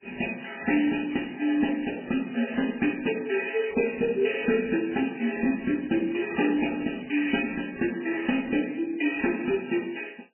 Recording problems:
lossy compression; MP3, log-spectral distance 13 dB, nothing above 2.5 kHz

